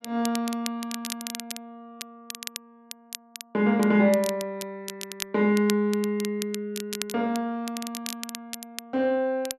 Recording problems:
crackle; vinyl, SNR 11 dB

